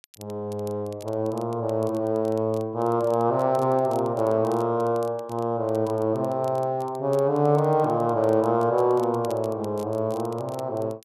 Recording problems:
crackle; vinyl, SNR 26 dB

